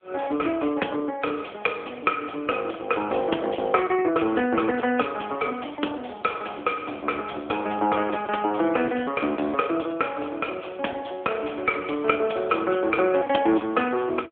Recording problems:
phone line; 220 Hz to 3.4 kHz, AMR-NB

